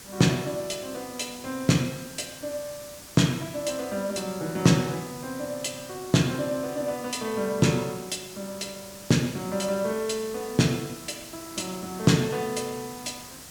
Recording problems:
background hiss; SNR 14 dB

